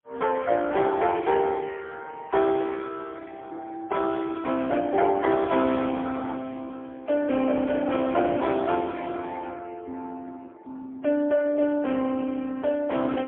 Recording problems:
telephone audio; 220 Hz to 3 kHz, AMR-NB, then MP3

